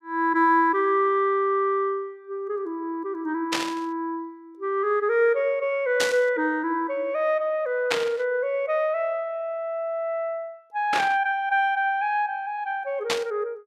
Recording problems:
burst of static; 5 times, first at 3.5 s; peak +4 dB vs average level

